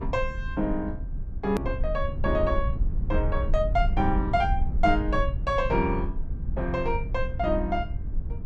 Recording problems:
rumble; below 70 Hz, SNR 3 dB
edit click; at 1.5 s

